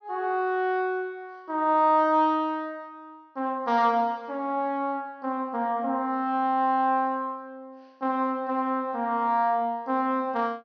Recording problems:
treble cut off; nothing above 6.2 kHz

